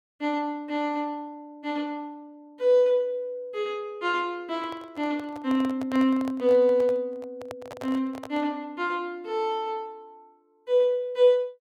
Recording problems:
handling noise; from 4.5 to 8.5 s; peak -8 dB vs average level

